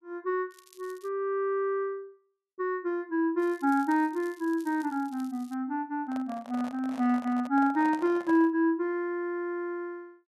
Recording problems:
crackle; at 0.5 s and from 3.5 to 5.5 s; loose cable, SNR 27 dB
microphone handling noise; from 6 to 8.5 s; peak -9 dB vs average level

